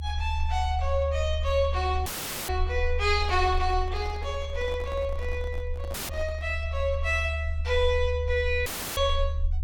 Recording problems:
rumble; below 76 Hz, strongest tone 76 Hz, SNR 3 dB
dropout; at 2 s, at 6 s and at 8.5 s
microphone handling noise; from 3 to 6.5 s; peak -11 dB vs average level

